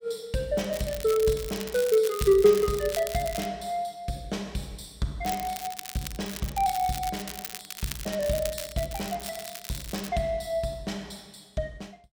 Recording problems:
crackle; from 0.5 to 3.5 s and from 5 to 10 s; loose cable, SNR 10 dB

